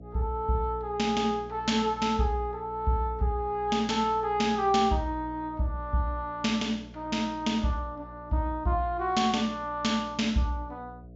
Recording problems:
low-pass filter; nothing above 7.4 kHz
hum; 60 Hz, harmonics up to 720 Hz, SNR 18 dB

